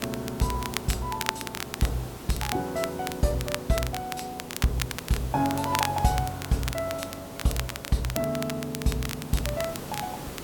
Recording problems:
background hiss; slope -5 dB per octave, SNR 11 dB
crackling; vinyl, SNR 6 dB

